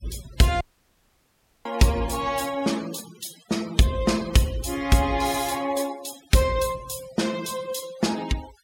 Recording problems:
noise reduction artefacts; signal-to-artefact ratio 18 dB
audio cutting out; at 0.5 s for 1 s

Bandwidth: 16.5 kHz